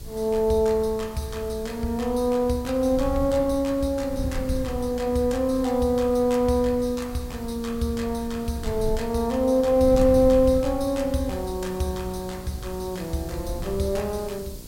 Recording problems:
hum; 60 Hz, harmonics up to 1.1 kHz, SNR 23 dB
hiss; SNR 22 dB
wind noise; below 110 Hz, SNR 14 dB

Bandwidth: 16 kHz